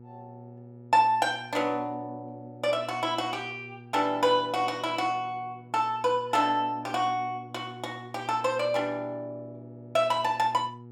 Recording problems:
hum; 60 Hz, harmonics up to 840 Hz, SNR 19 dB

